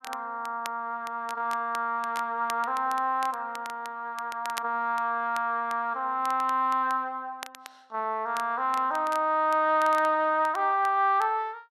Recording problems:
crackling; vinyl, SNR 19 dB

